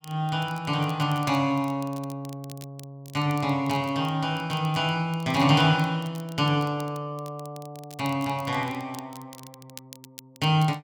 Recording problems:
crackling; vinyl, SNR 22 dB

